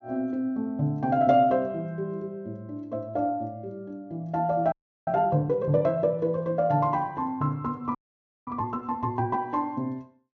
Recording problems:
low-pass filter; nothing above 6.9 kHz
audio freezing; at 4.5 s and at 8 s for 0.5 s

